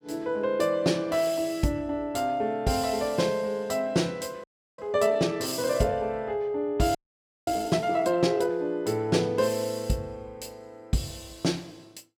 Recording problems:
frozen audio; at 4.5 s and at 7 s for 0.5 s

